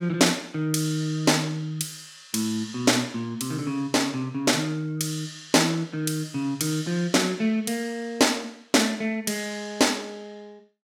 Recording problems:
none

